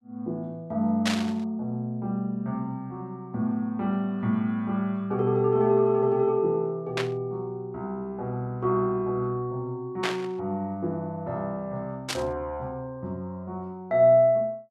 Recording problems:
static burst; 4 times, first at 1 s; peak +4 dB vs average level

